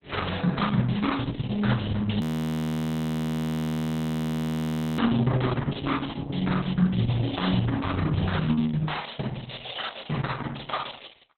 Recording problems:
lossy codec; Opus, log-spectral distance 9 dB, nothing above 16 kHz
frozen audio; at 2 s for 3 s

